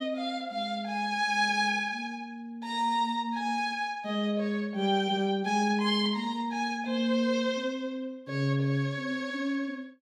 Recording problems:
none

